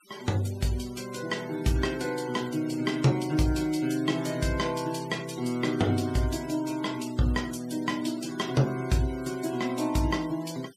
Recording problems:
denoising artefacts; signal-to-artefact ratio 18 dB

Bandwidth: 15 kHz